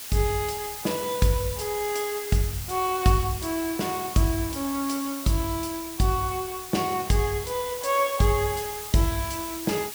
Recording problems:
background hiss; slope +1 dB per octave, SNR 9 dB

